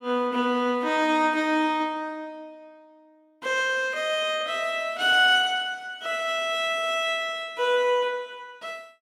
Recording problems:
none

